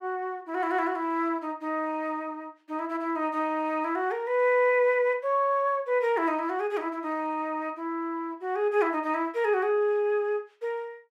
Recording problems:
none

